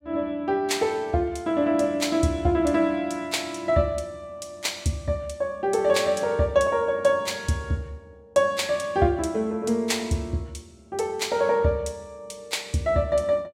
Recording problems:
none

